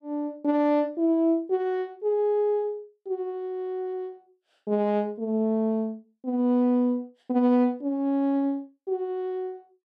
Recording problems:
none

